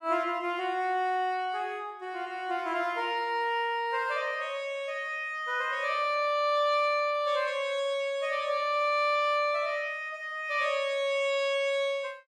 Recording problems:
none

